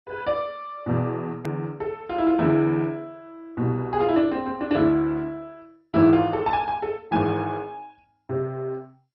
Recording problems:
codec artefacts; MP2, log-spectral distance 2 dB, nothing above 13.1 kHz
click at an edit; at 1.5 s

